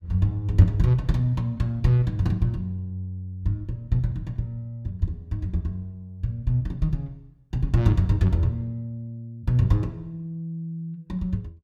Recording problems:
none

